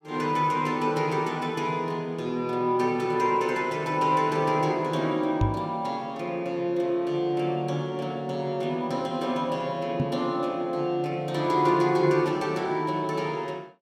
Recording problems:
microphone thump; at 5.5 s and at 10 s; peak +5 dB vs average level

